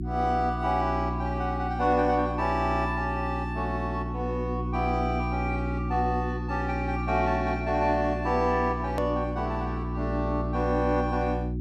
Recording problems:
electrical hum; 60 Hz, harmonics up to 360 Hz, SNR 4 dB
edit click; at 9 s

